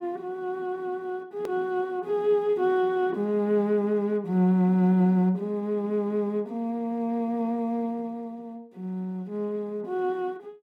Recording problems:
edit click; at 1.5 s

